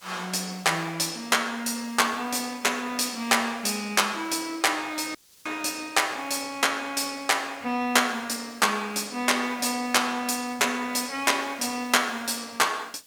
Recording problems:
background hiss; SNR 27 dB
audio cutting out; at 5 s

